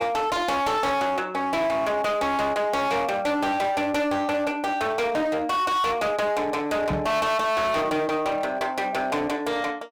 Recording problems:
distortion; hard clipping, uneven, signal-to-distortion ratio 8 dB
microphone thump; at 7 s; peak 0 dB vs average level

